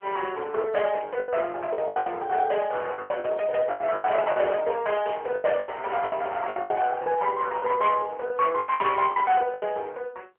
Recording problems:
phone line; 370 Hz to 3.3 kHz, AMR-NB
distorted audio; hard clipping, signal-to-distortion ratio 14 dB
packet loss; 14% of the sound replaced, filled with the last packet

